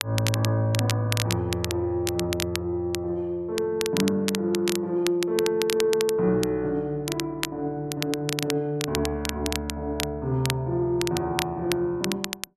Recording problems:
crackle; vinyl, SNR 6 dB

